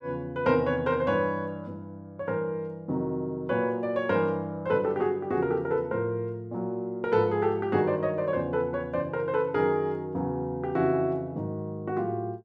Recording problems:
none

